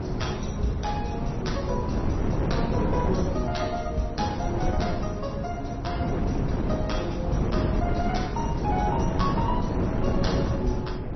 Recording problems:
codec artefacts; MP3, then MP3, log-spectral distance 4 dB, nothing above 5.8 kHz
wind noise; below 300 Hz, SNR -3 dB

